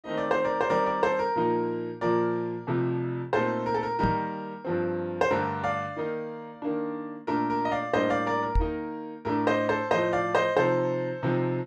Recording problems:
microphone bump; at 4 s and at 8.5 s; peak +4 dB vs average level

